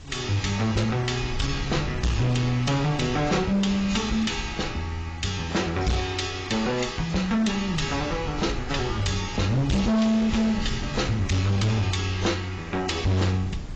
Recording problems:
lossy codec; AAC, log-spectral distance 5 dB, nothing above 7.3 kHz
distortion; hard clipping, uneven, signal-to-distortion ratio 7 dB
background hiss; slope -2 dB per octave, SNR 25 dB
wind noise; below 150 Hz, SNR 13 dB

